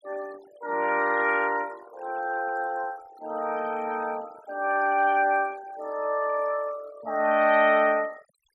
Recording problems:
denoising artefacts; signal-to-artefact ratio 21 dB

